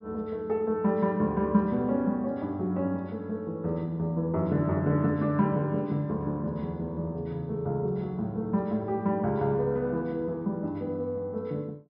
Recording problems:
treble cut off; nothing above 5.5 kHz

